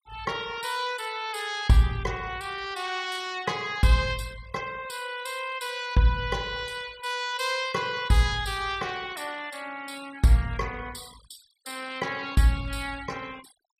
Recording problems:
denoising artefacts; signal-to-artefact ratio 19 dB

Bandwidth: 14.5 kHz